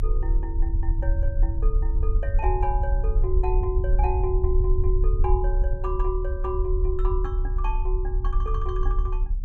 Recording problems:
low-frequency rumble; below 56 Hz, strongest tone 34 Hz, SNR -6 dB

